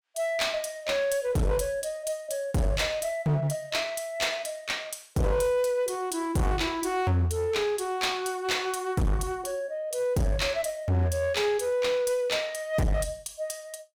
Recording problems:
distorted audio; hard clipping, uneven, signal-to-distortion ratio 6 dB

